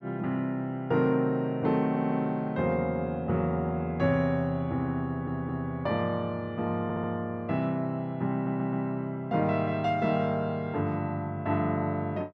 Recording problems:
stutter; 4 times, first at 2 s

